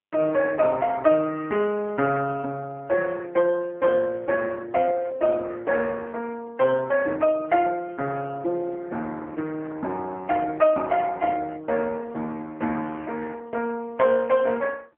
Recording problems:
phone line; 260 Hz to 2.8 kHz, AMR-NB

